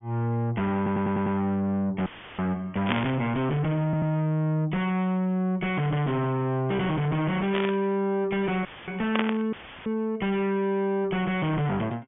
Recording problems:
low-pass filter; nothing above 3.5 kHz
distorted audio; soft clipping, signal-to-distortion ratio 5 dB
stutter; at 1 s and at 4 s
dropout; at 2 s, at 8.5 s and at 9.5 s; filled with static
static burst; at 3 s, at 7.5 s and at 9 s; peak +3 dB vs average level

